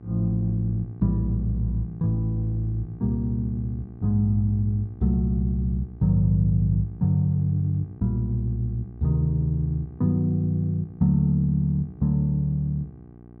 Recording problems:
hum; 60 Hz, harmonics up to 840 Hz, SNR 21 dB

